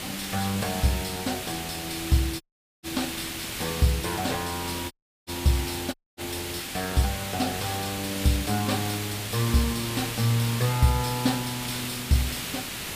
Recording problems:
hiss; slope -1 dB per octave, SNR 4 dB
dropout; at 2.5 s, at 5 s and at 6 s

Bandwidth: 15 kHz